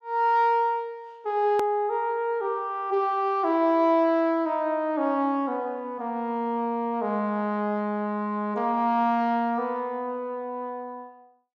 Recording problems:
hard cut with a click; at 1.5 s

